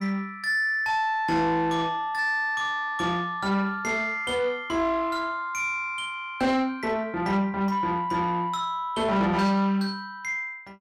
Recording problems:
distortion; soft clipping, signal-to-distortion ratio 11 dB

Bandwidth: 16 kHz